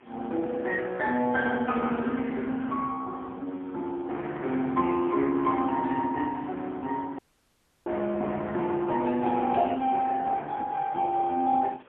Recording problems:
phone line; 190 Hz to 3.5 kHz, AMR-NB, then MP3
background hiss; SNR 28 dB
audio cutting out; at 7 s for 0.5 s
burst of static; at 9.5 s; peak -18 dB vs average level

